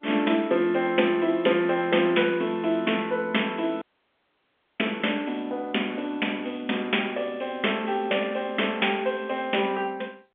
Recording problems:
telephone audio; 240 Hz to 3.4 kHz, G.711
audio cutting out; at 4 s for 1 s

